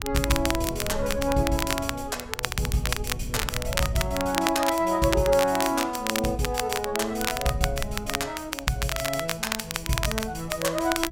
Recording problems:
wind on the microphone; below 110 Hz, SNR 12 dB
crackling; vinyl, SNR 4 dB

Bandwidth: 16 kHz